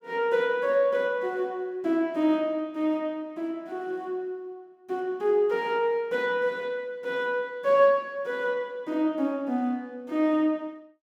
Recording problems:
none

